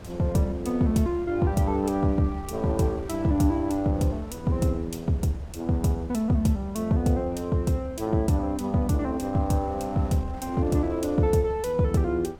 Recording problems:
wind on the microphone; below 450 Hz, SNR 19 dB

